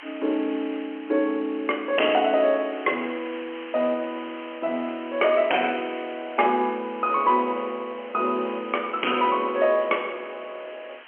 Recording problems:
telephone audio; 220 Hz to 3 kHz, G.711
distortion; hard clipping, uneven, signal-to-distortion ratio 8 dB
background hiss; SNR 18 dB

